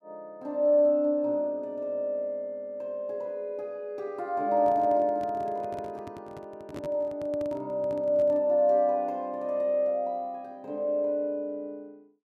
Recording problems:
handling noise; from 4.5 to 8.5 s; peak -8 dB vs average level

